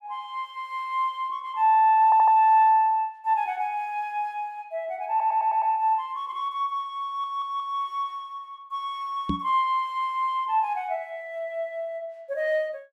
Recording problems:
audio stuttering; at 2 s, at 5 s and at 7 s
microphone bump; at 9.5 s; peak +1 dB vs average level

